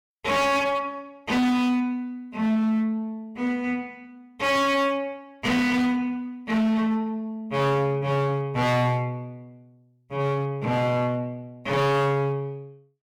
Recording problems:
distorted audio; hard clipping, signal-to-distortion ratio 8 dB

